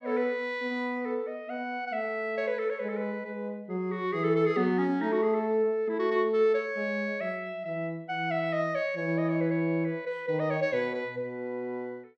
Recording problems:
none

